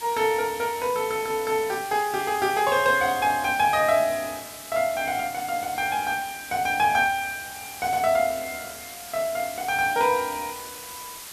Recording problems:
background hiss; slope 0 dB per octave, SNR 13 dB

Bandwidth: 14 kHz